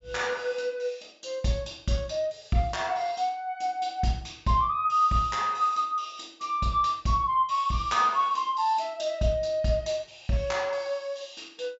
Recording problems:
treble missing; nothing above 8 kHz

